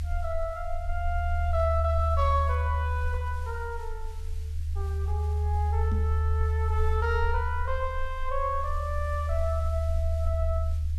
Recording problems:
background hiss; SNR 23 dB
rumble; below 78 Hz, strongest tone 76 Hz, SNR -3 dB
microphone thump; at 6 s; peak 0 dB vs average level

